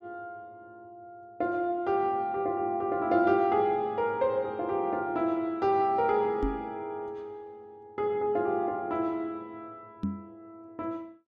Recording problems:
knock on the microphone; at 6.5 s and at 10 s; peak +2 dB vs average level

